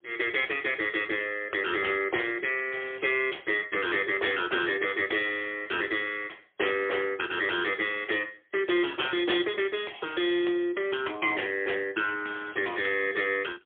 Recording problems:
phone line; 300 Hz to 3.4 kHz, AMR-NB, then MP3

